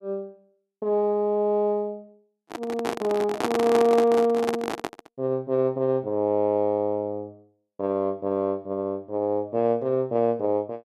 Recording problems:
microphone handling noise; from 2.5 to 5 s; peak +3 dB vs average level

